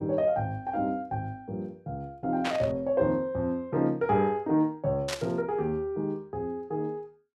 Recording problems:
burst of static; at 2.5 s and at 5 s; peak +1 dB vs average level

